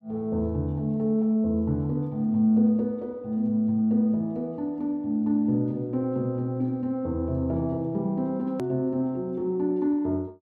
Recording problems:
hard cut with a click; at 8.5 s

